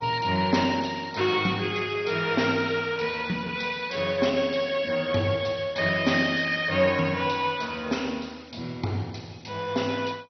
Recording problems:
codec artefacts; MP2, log-spectral distance 5 dB, nothing above 5.8 kHz

